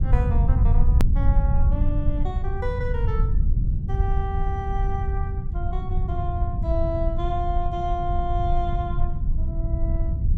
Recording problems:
rumble; below 84 Hz, SNR -7 dB
edit click; at 1 s

